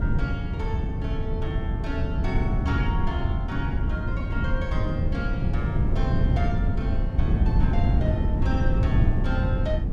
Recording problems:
wind on the microphone; below 140 Hz, SNR -9 dB

